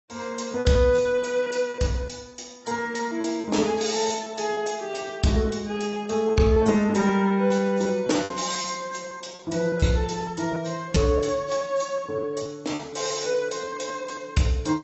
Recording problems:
lossy codec; AAC, log-spectral distance 5 dB, nothing above 7.6 kHz
lost packets; 10% of the sound replaced, filled with repeated pitch periods

